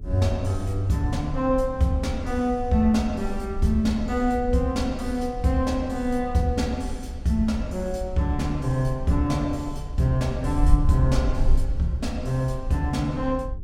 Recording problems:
hum; 60 Hz, harmonics up to 420 Hz, SNR 22 dB
wind noise; below 58 Hz, SNR 8 dB

